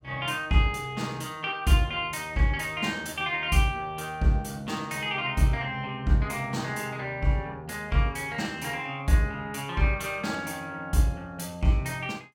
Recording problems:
none

